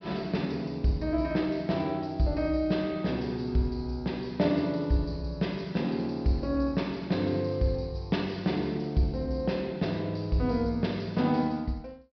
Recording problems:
treble missing; nothing above 5.5 kHz

